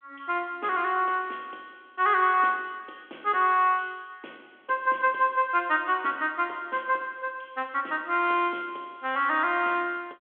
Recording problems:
phone line; 280 Hz to 3.4 kHz, G.726

